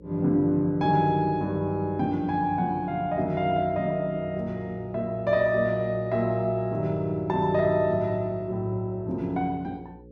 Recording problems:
mains hum; 60 Hz, harmonics up to 540 Hz, SNR 23 dB

